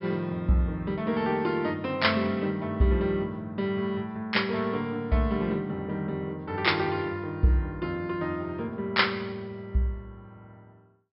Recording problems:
low-pass filter; nothing above 5.4 kHz

